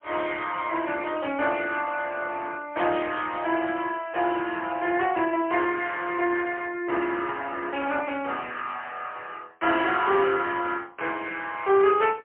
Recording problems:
telephone audio; 300 Hz to 3.2 kHz, AMR-NB, then MP3

